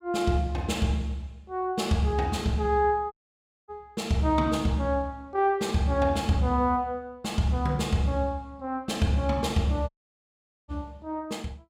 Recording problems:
dropout; at 3 s for 0.5 s and at 10 s for 1 s

